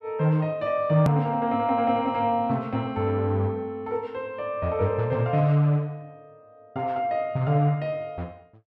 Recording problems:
hard cut with a click; at 1 s

